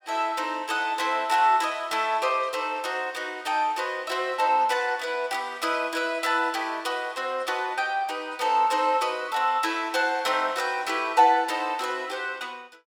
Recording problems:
none

